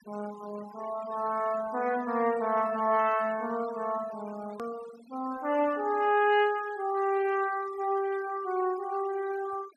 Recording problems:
noise reduction artefacts; signal-to-artefact ratio 19 dB
edit click; at 4.5 s

